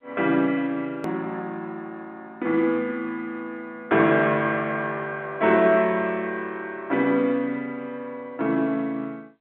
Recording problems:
phone line; 190 Hz to 3.4 kHz, G.711
hard cut with a click; at 1 s

